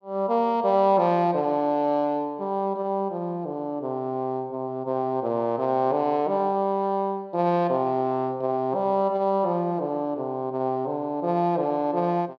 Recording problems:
none

